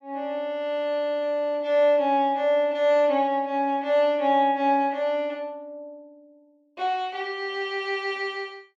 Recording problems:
none

